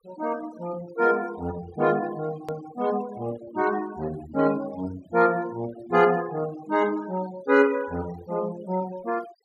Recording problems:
denoising artefacts; signal-to-artefact ratio 19 dB
hard cut with a click; at 2.5 s

